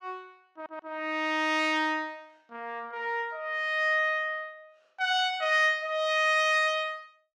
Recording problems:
audio stuttering; at 0.5 s

